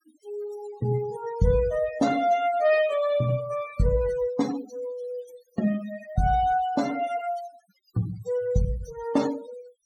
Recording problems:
denoising artefacts; signal-to-artefact ratio 15 dB

